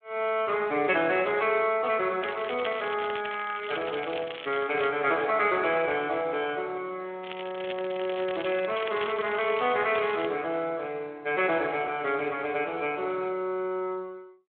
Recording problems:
phone line; 190 Hz to 3.7 kHz, Speex
crackling; from 2 to 5 s, from 7 to 10 s and at 10 s; loose cable, SNR 12 dB

